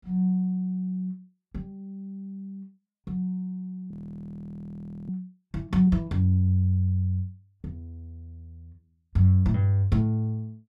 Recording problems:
audio freezing; at 4 s for 1 s

